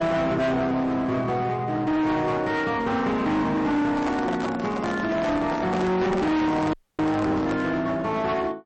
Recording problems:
codec artefacts; MP3, log-spectral distance 2 dB, nothing above 8.2 kHz
distorted audio; hard clipping, uneven, signal-to-distortion ratio 7 dB
handling noise; from 4 to 7.5 s; peak -2 dB vs average level
audio cutting out; at 6.5 s

